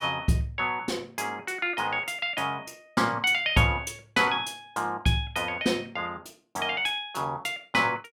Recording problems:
none

